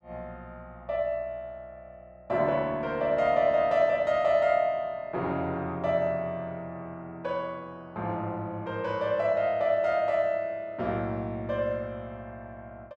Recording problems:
none

